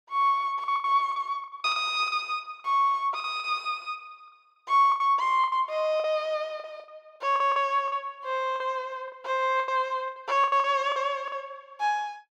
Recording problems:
lost packets; 12% of the sound replaced, filled with the last packet

